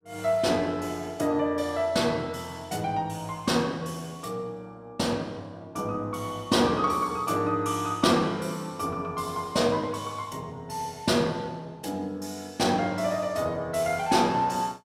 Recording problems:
none

